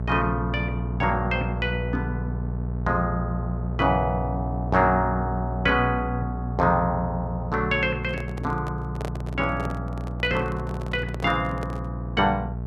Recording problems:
hum; 60 Hz, harmonics up to 660 Hz, SNR 4 dB
microphone handling noise; from 8 to 12 s; peak -3 dB vs average level

